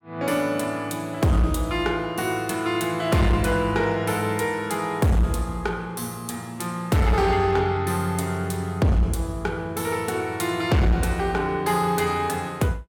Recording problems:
distortion; hard clipping, uneven, signal-to-distortion ratio 11 dB

